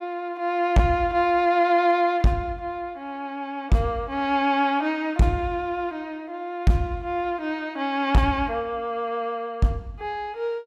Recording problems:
distortion; hard clipping, signal-to-distortion ratio 12 dB

